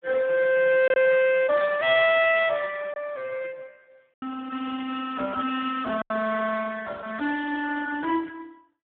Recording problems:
phone line; 240 Hz to 2.9 kHz, Speex
packet loss; 3% of the sound replaced, filled with silence

